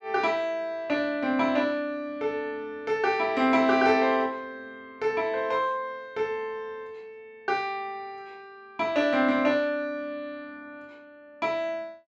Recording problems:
none

